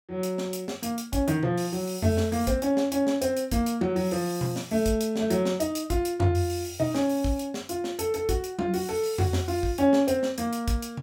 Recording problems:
none

